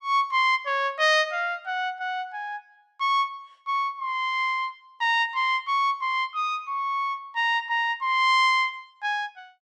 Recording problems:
none

